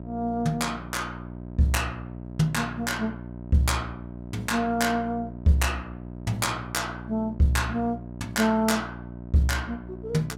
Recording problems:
mains hum; 60 Hz, harmonics up to 1 kHz, SNR 12 dB

